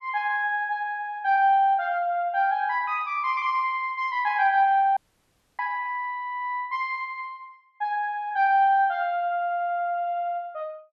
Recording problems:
dropout; at 5 s for 0.5 s

